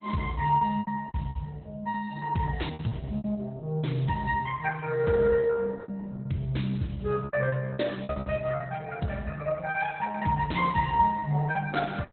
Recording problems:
codec artefacts; Opus, log-spectral distance 3 dB, nothing above 4 kHz
lost packets; 12% of the sound replaced, filled with repeated pitch periods

